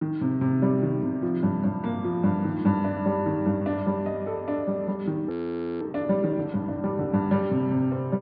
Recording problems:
low-pass filter; nothing above 4.9 kHz
audio freezing; at 5.5 s for 0.5 s

